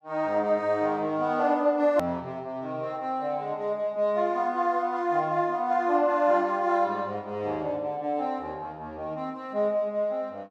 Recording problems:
edit click; at 2 s

